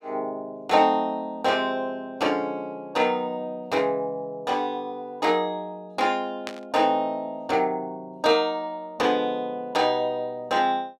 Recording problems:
burst of static; at 6.5 s; peak -4 dB vs average level

